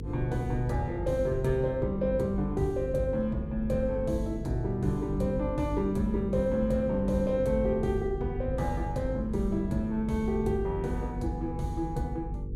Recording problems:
electrical hum; 50 Hz, harmonics up to 500 Hz, SNR 8 dB
rumble; below 120 Hz, SNR 12 dB

